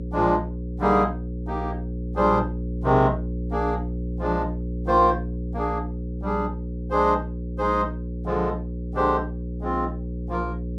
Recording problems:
hum; 60 Hz, harmonics up to 540 Hz, SNR 6 dB

